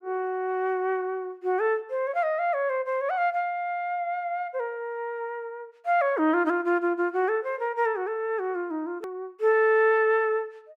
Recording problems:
hard cut with a click; at 9 s

